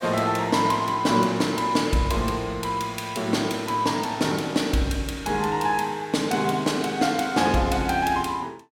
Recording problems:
none

